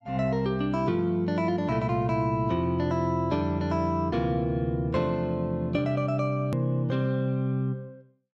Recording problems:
hard cut with a click; at 6.5 s

